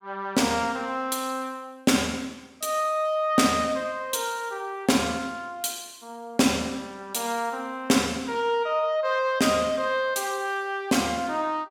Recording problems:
none

